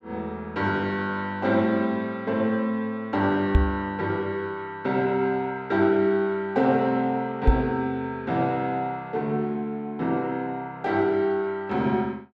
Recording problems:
knock on the microphone; at 3.5 s and at 7.5 s; peak +9 dB vs average level

